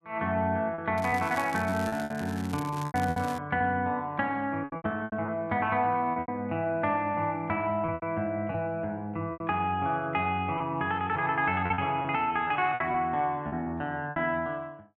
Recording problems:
lost packets; 9% of the sound replaced, filled with repeated pitch periods
crackle; from 1 to 3.5 s; loose cable, SNR 16 dB

